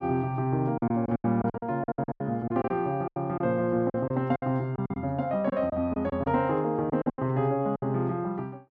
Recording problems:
lost packets; 13% of the sound replaced, filled with silence

